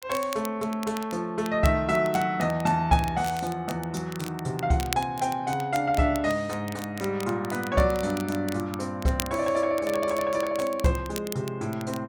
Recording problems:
crackling; vinyl, SNR 15 dB

